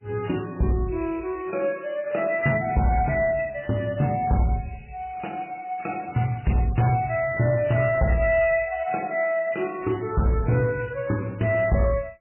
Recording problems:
codec artefacts; MP3, log-spectral distance 4 dB, nothing above 2.7 kHz
distorted audio; hard clipping, uneven, signal-to-distortion ratio 11 dB

